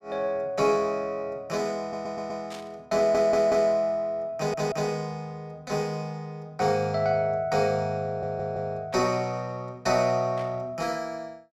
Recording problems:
audio stuttering; 4 times, first at 2 s
static burst; at 2.5 s, at 9 s and at 10 s; peak -11 dB vs average level

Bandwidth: 15.5 kHz